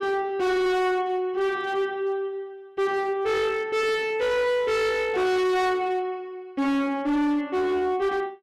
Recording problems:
distorted audio; hard clipping, signal-to-distortion ratio 6 dB

